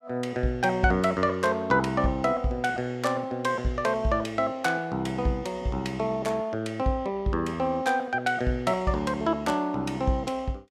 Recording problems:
none

